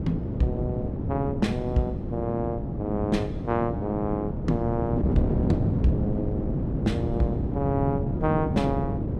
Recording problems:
wind on the microphone; below 280 Hz, SNR 0 dB

